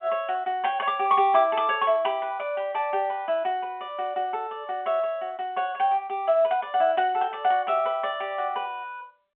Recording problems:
phone line; 280 Hz to 3.4 kHz, G.711

